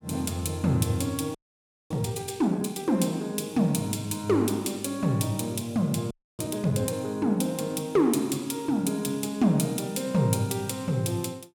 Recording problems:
audio freezing; at 1.5 s for 0.5 s and at 6 s

